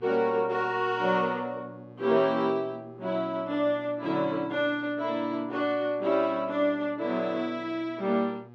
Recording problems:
hum; 60 Hz, harmonics up to 1.7 kHz, SNR 22 dB

